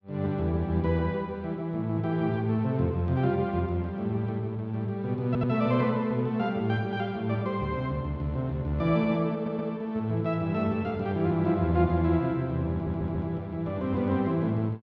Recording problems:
audio stuttering; at 5.5 s, at 9.5 s and at 13 s

